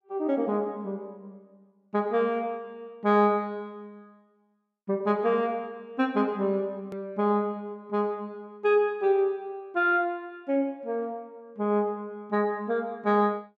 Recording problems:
hard cut with a click; at 7 s

